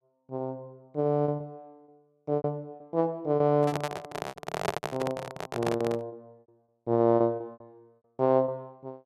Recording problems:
packet loss; 13% of the sound replaced, filled with repeated pitch periods
microphone handling noise; from 3.5 to 6 s; peak +4 dB vs average level

